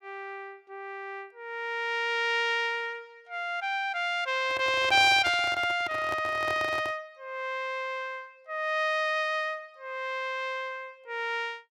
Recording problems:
microphone handling noise; from 4.5 to 7 s; peak -5 dB vs average level

